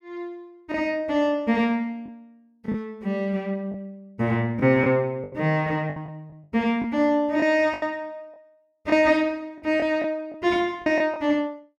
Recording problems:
lost packets; 6% of the sound replaced, filled with the last packet

